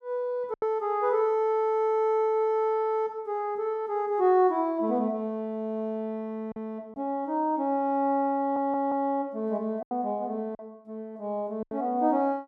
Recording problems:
packet loss; 3% of the sound replaced, filled with silence
audio stuttering; at 8.5 s

